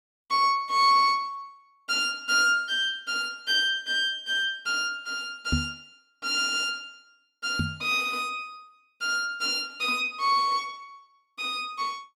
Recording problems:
microphone bump; at 5.5 s and at 7.5 s; peak +3 dB vs average level

